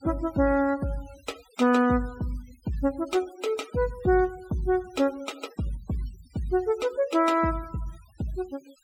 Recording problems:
noise reduction artefacts; signal-to-artefact ratio 22 dB

